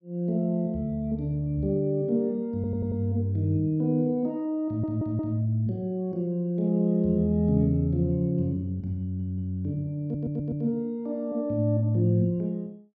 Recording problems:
stutter; 4 times, first at 2.5 s

